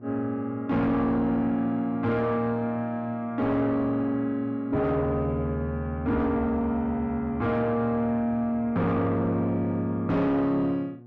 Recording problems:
distorted audio; soft clipping, signal-to-distortion ratio 10 dB
hum; 60 Hz, harmonics up to 840 Hz, SNR 22 dB

